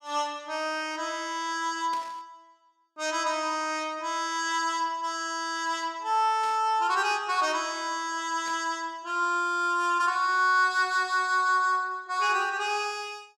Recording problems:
burst of static; at 2 s, at 6.5 s and at 8.5 s; peak -11 dB vs average level

